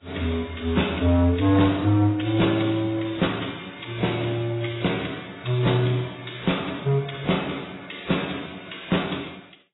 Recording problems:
lossy compression; AAC, then AAC, log-spectral distance 9 dB, nothing above 3.8 kHz
distortion; hard clipping, signal-to-distortion ratio 12 dB

